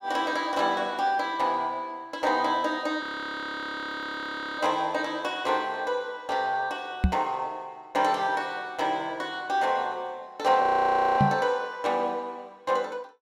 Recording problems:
audio freezing; at 3 s for 1.5 s and at 11 s for 0.5 s
knock on the microphone; at 7 s and at 11 s; peak +8 dB vs average level

